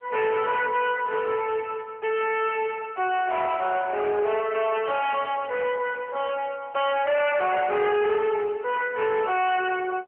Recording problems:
phone line; 370 Hz to 3.2 kHz, AMR-NB
distorted audio; hard clipping, signal-to-distortion ratio 7 dB

